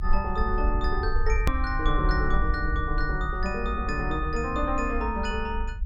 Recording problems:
rumble; below 58 Hz, SNR 2 dB
edit click; at 1.5 s

